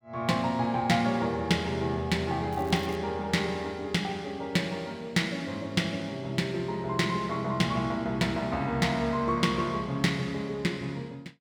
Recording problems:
crackle; at 2.5 s; loose cable, SNR 23 dB

